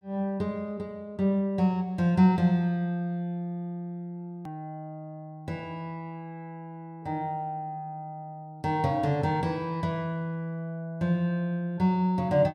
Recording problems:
edit click; at 4.5 s

